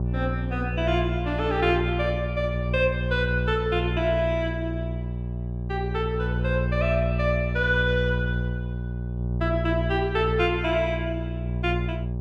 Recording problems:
electrical hum; 60 Hz, harmonics up to 600 Hz, SNR 2 dB

